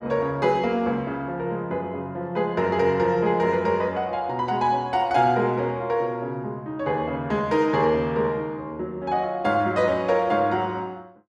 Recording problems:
none

